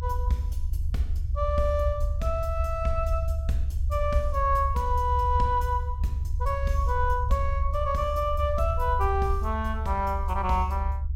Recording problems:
low-frequency rumble; below 72 Hz, SNR 1 dB

